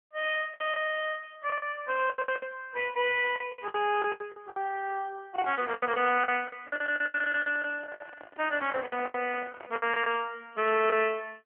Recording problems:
phone line; 300 Hz to 3.1 kHz, AMR-NB
packet loss; 15% of the sound replaced, filled with the last packet
handling noise; from 7 to 10 s; peak -11 dB vs average level

